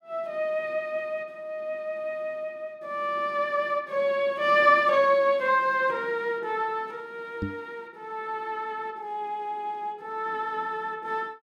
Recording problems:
microphone bump; at 7.5 s; peak 0 dB vs average level

